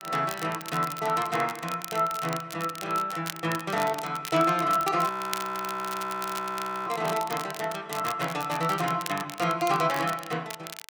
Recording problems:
crackle; vinyl, SNR 12 dB
frozen audio; at 5 s for 2 s

